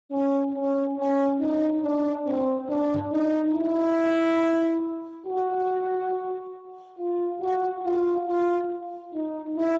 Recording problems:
codec artefacts; Speex, log-spectral distance 2 dB, nothing above 7.6 kHz
distorted audio; hard clipping, uneven, signal-to-distortion ratio 10 dB
knock on the microphone; at 3 s; peak -3 dB vs average level

